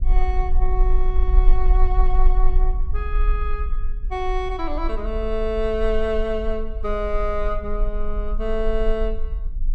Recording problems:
rumble; below 38 Hz, strongest tone 20 Hz, SNR -2 dB

